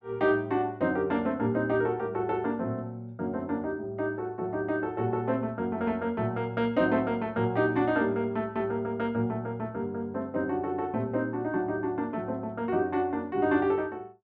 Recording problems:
none

